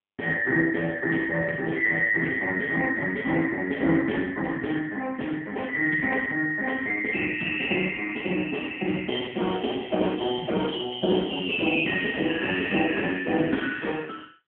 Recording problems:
phone line; 170 Hz to 3.5 kHz, AMR-NB

